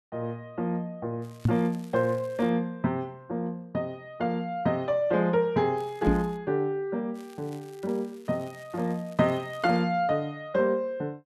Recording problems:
crackling; from 1 to 2.5 s, at 6 s and from 7 to 10 s; loose cable, SNR 27 dB
knock on the microphone; at 1.5 s and at 6 s; peak +7 dB vs average level

